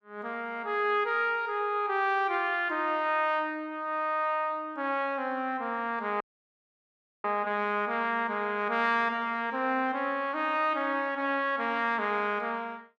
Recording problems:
audio cutting out; at 6 s for 1 s

